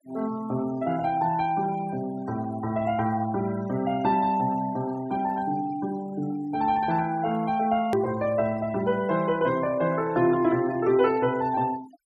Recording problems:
denoising artefacts; signal-to-artefact ratio 19 dB
edit click; at 8 s

